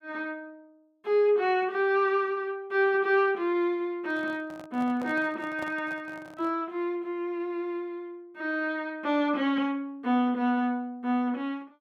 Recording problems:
handling noise; from 4 to 6.5 s; peak -8 dB vs average level

